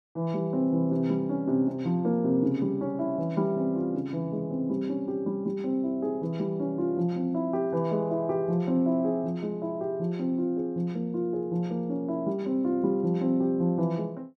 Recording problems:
none

